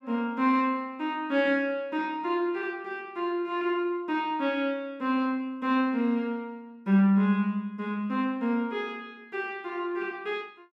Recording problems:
none

